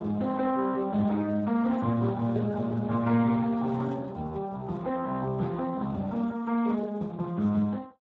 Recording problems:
lossy codec; AAC, then Speex, log-spectral distance 3 dB

